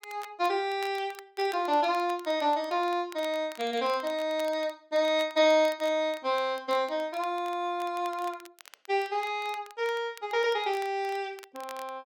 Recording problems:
crackle; vinyl, SNR 22 dB

